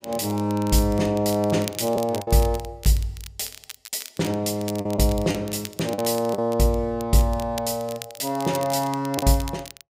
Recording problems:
crackling; vinyl, SNR 15 dB
lost packets; 3% of the sound replaced, filled with the last packet

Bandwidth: 15.5 kHz